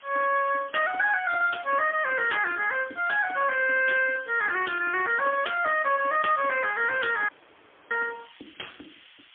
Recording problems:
phone line; 280 Hz to 3 kHz, AMR-NB, then MP3
background hiss; SNR 26 dB
audio cutting out; at 7.5 s for 0.5 s

